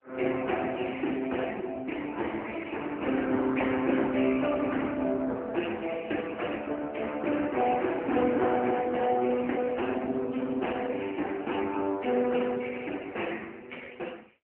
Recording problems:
phone line; 220 Hz to 3 kHz, AMR-NB

